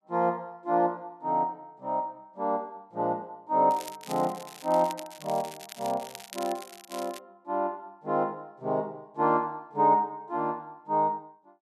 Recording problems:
crackling; from 3.5 to 7 s; loose cable, SNR 15 dB

